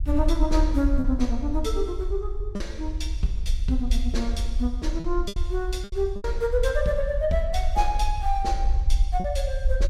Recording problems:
rumble; below 54 Hz, SNR 1 dB
packet loss; 4% of the sound replaced, filled with repeated pitch periods

